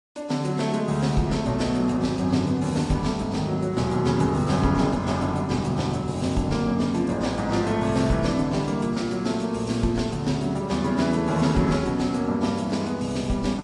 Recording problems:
lossy compression; AAC, log-spectral distance 3 dB, nothing above 10.1 kHz

